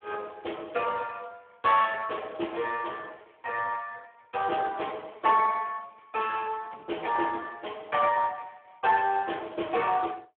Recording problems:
phone line; 260 Hz to 3.3 kHz, Speex

